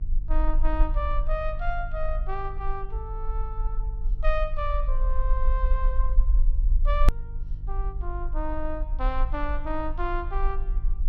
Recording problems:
mains hum; 50 Hz, harmonics up to 350 Hz, SNR 10 dB
low-frequency rumble; below 42 Hz, strongest tone 20 Hz, SNR -4 dB
edit click; at 7 s

